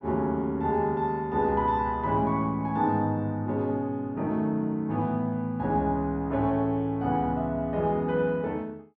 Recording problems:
none

